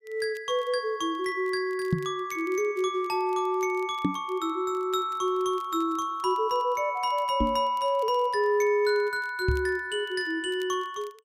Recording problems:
crackling; vinyl, SNR 30 dB
knock on the microphone; 4 times, first at 2 s; peak +6 dB vs average level

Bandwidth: 15.5 kHz